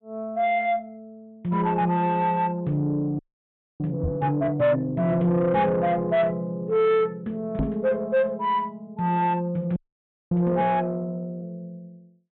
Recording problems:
treble cut off; nothing above 4 kHz
distorted audio; soft clipping, signal-to-distortion ratio 10 dB
frozen audio; at 3 s for 0.5 s and at 10 s for 0.5 s
microphone thump; at 4 s and at 7.5 s; peak +2 dB vs average level

